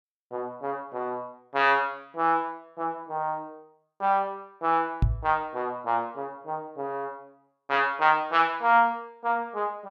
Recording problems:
knock on the microphone; at 5 s; peak +7 dB vs average level

